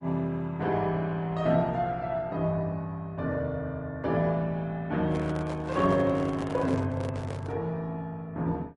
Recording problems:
lossy codec; Opus, then MP3, log-spectral distance 2 dB
microphone handling noise; from 5 to 7.5 s; peak -6 dB vs average level

